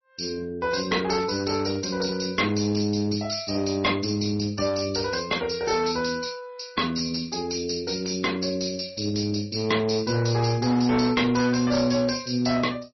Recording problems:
lossy compression; MP3, log-spectral distance 9 dB, nothing above 5.8 kHz
distortion; hard clipping, uneven, signal-to-distortion ratio 11 dB

